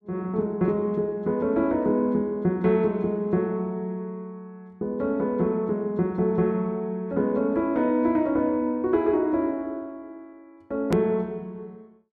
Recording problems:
hard cut with a click; at 11 s

